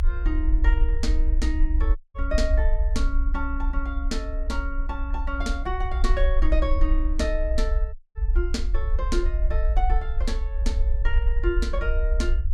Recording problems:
rumble; below 58 Hz, SNR -5 dB
audio cutting out; at 2 s and at 8 s

